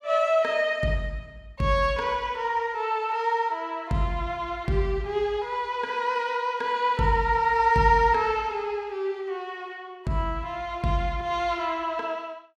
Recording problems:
none

